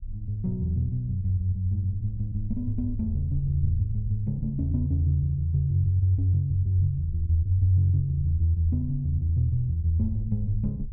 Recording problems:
rumble; below 56 Hz, SNR 15 dB

